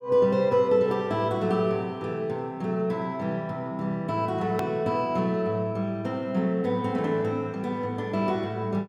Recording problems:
edit click; at 4.5 s

